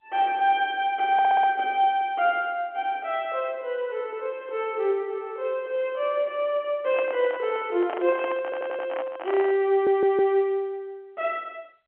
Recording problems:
phone line; 260 Hz to 3.3 kHz, G.711
stutter; at 1 s, at 8.5 s and at 9.5 s
handling noise; from 7 to 9.5 s; peak -4 dB vs average level

